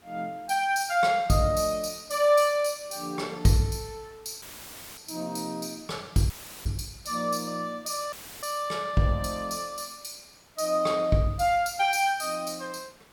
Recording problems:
hiss; slope -3 dB per octave, SNR 29 dB
audio cutting out; at 4.5 s for 0.5 s, at 6.5 s and at 8 s; filled with static

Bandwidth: 18 kHz